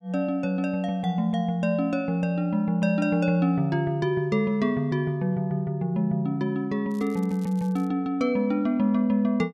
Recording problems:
crackling; at 7 s; loose cable, SNR 28 dB

